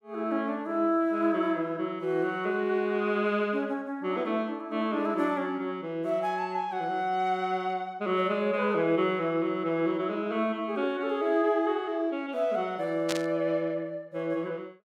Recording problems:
static burst; at 13 s; peak +1 dB vs average level

